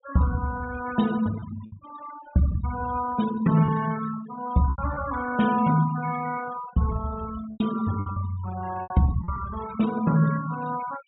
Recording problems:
low-pass filter; nothing above 4 kHz
denoising artefacts; signal-to-artefact ratio 14 dB
packet loss; 5% of the sound replaced, filled with repeated pitch periods

